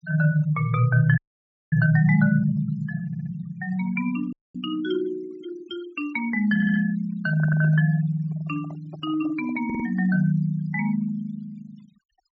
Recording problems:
treble missing; nothing above 8 kHz
noise reduction artefacts; signal-to-artefact ratio 22 dB
audio cutting out; at 1 s for 0.5 s and at 4.5 s
stutter; 4 times, first at 3 s
handling noise; from 7 to 10 s; peak -15 dB vs average level

